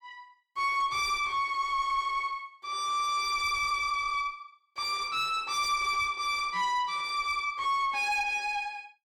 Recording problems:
distorted audio; soft clipping, signal-to-distortion ratio 10 dB

